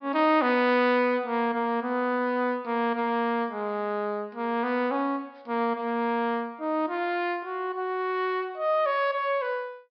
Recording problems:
treble cut off; nothing above 5.5 kHz

